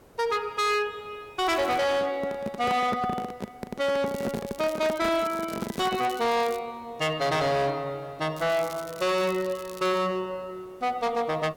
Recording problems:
distorted audio; hard clipping, signal-to-distortion ratio 8 dB
background hiss; SNR 27 dB
crackling; at 1.5 s, from 4 to 6.5 s and from 8.5 to 10 s; loose cable, SNR 19 dB
microphone handling noise; from 2 to 6 s; peak 0 dB vs average level

